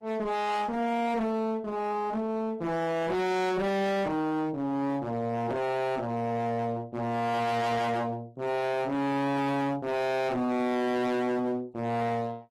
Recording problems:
lossy codec; Opus, log-spectral distance 2 dB, nothing above 13.1 kHz
distorted audio; hard clipping, uneven, signal-to-distortion ratio 5 dB

